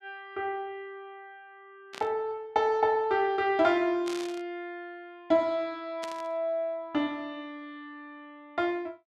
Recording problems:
static burst; at 2 s, at 4 s and at 6 s; peak -7 dB vs average level

